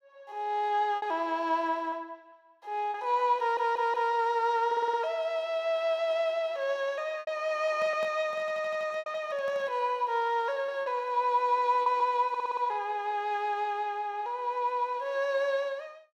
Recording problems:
lost packets; 4% of the sound replaced, filled with repeated pitch periods
audio stuttering; 4 times, first at 3.5 s
handling noise; from 8 to 9.5 s; peak -10 dB vs average level

